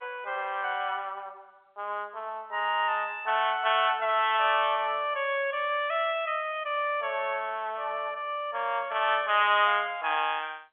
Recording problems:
telephone audio; 240 Hz to 3.5 kHz, G.711

